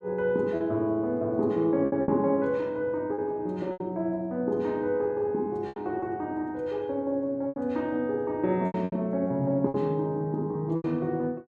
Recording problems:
packet loss; 7% of the sound replaced, filled with repeated pitch periods

